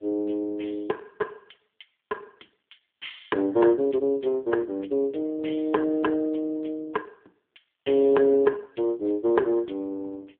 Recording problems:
telephone audio; 300 Hz to 3.6 kHz, AMR-NB

